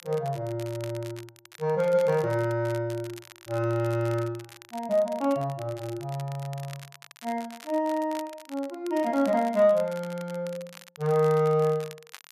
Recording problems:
crackling; vinyl, SNR 20 dB

